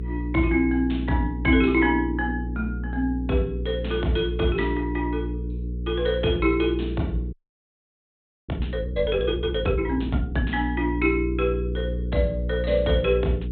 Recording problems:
treble missing; nothing above 4 kHz
hum; 60 Hz, harmonics up to 480 Hz, SNR 6 dB
audio freezing; at 7.5 s for 1 s

